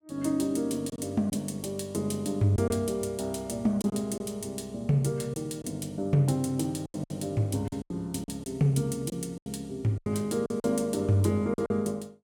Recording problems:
packet loss; 7% of the sound replaced, filled with silence

